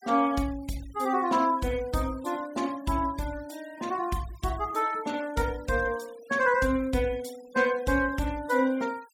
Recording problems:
denoising artefacts; signal-to-artefact ratio 21 dB

